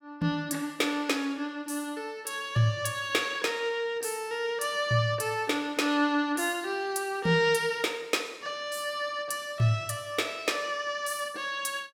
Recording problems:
none

